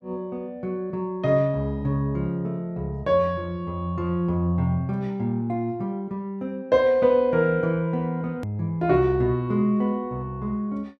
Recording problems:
click at an edit; at 8.5 s

